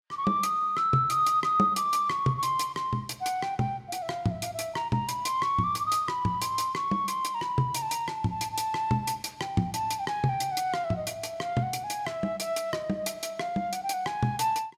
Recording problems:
none

